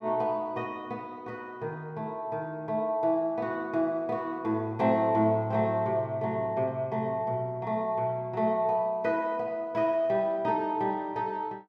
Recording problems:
none

